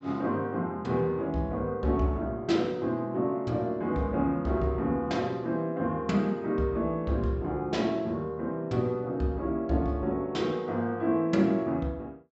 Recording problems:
treble missing; nothing above 7.8 kHz

